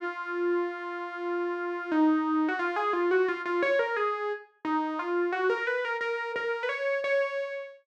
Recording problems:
none

